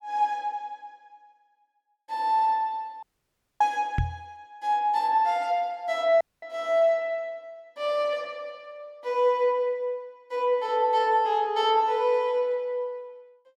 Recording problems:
dropout; at 3 s for 0.5 s and at 6 s
microphone thump; at 4 s; peak +2 dB vs average level

